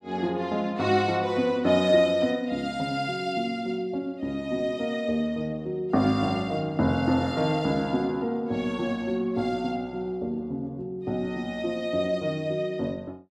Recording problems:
none

